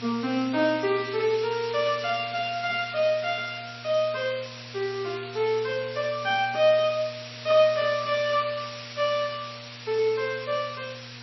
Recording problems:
lossy compression; MP3, log-spectral distance 17 dB, nothing above 5 kHz
hum; 60 Hz, harmonics up to 1.2 kHz, SNR 20 dB
background hiss; slope +2 dB per octave, SNR 13 dB

